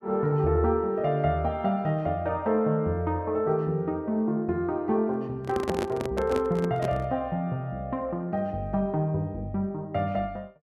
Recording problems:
microphone handling noise; from 5.5 to 7 s; peak +3 dB vs average level

